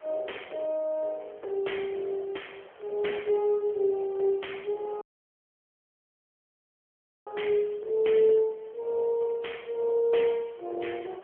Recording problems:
telephone audio; 320 Hz to 3.2 kHz, AMR-NB
wind on the microphone; below 1.5 kHz, SNR 26 dB
audio cutting out; at 5 s for 2.5 s

